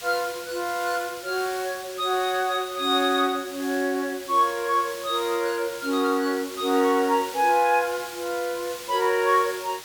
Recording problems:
hiss; slope +1 dB per octave, SNR 13 dB

